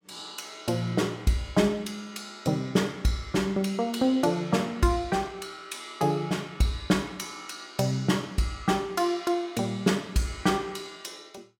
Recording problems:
none

